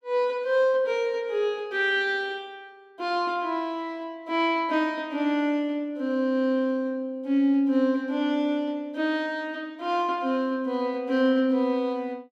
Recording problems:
none

